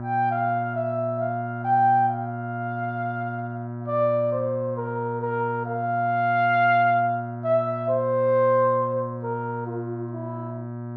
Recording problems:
hum; 60 Hz, harmonics up to 1.6 kHz, SNR 9 dB

